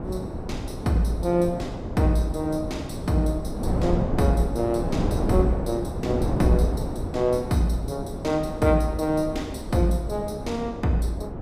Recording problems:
wind on the microphone; below 370 Hz, SNR 5 dB

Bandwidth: 15 kHz